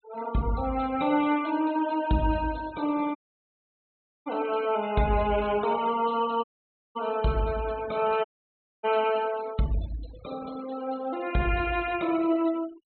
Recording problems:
low-pass filter; nothing above 4.2 kHz
denoising artefacts; signal-to-artefact ratio 18 dB
audio cutting out; at 3 s for 1 s, at 6.5 s for 0.5 s and at 8.5 s for 0.5 s

